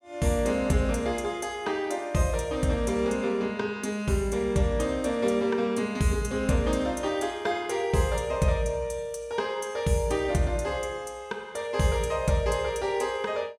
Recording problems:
none

